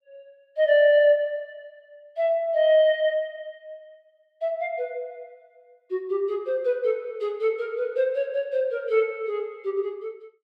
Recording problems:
none

